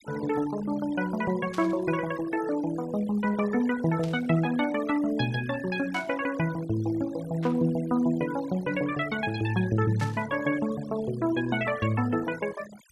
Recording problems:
noise reduction artefacts; signal-to-artefact ratio 17 dB
burst of static; 5 times, first at 1.5 s; peak -9 dB vs average level

